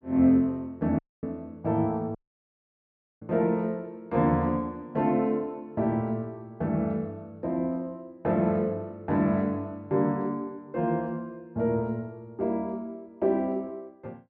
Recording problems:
dropout; at 1 s and at 2 s for 1 s

